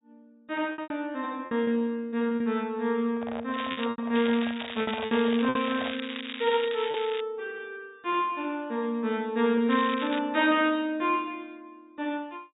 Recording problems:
treble cut off; nothing above 4 kHz
packet loss; 5% of the sound replaced, filled with repeated pitch periods
microphone handling noise; from 3 to 6 s; peak -6 dB vs average level
crackling; at 3.5 s, from 4 to 7 s and at 9.5 s; loose cable, SNR 10 dB

